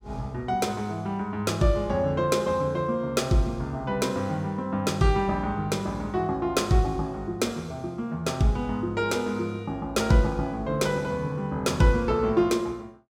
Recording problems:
none

